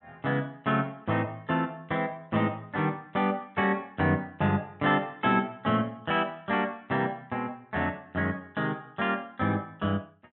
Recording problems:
low-pass filter; nothing above 3.9 kHz

